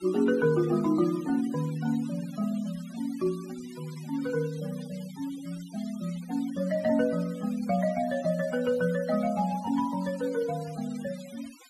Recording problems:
noise reduction artefacts; signal-to-artefact ratio 19 dB

